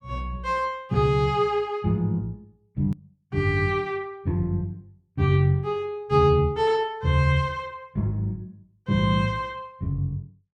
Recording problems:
hard cut with a click; at 3 s

